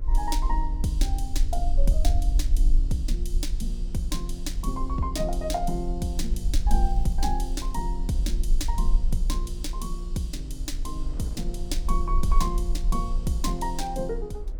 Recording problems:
rumble; below 44 Hz, SNR -2 dB
wind noise; below 410 Hz, SNR 19 dB
crackling; at 7 s; loose cable, SNR 29 dB

